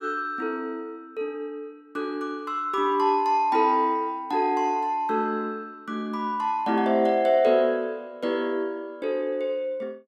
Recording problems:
none

